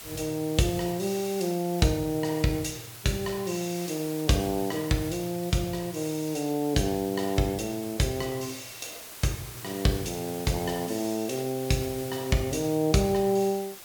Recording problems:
background hiss; slope 0 dB per octave, SNR 13 dB

